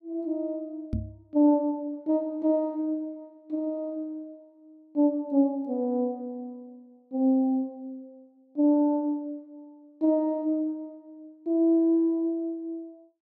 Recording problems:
microphone bump; at 1 s; peak 0 dB vs average level

